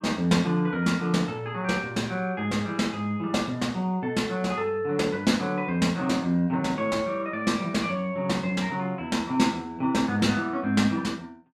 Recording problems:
none

